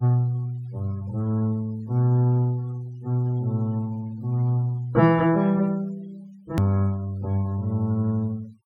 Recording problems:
denoising artefacts; signal-to-artefact ratio 27 dB
hard cut with a click; at 6.5 s

